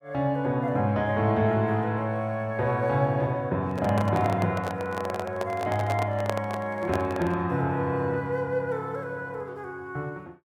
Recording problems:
microphone handling noise; from 3.5 to 7.5 s; peak +2 dB vs average level

